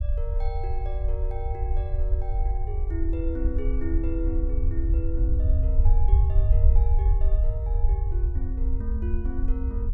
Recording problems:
rumble; below 64 Hz, SNR -11 dB

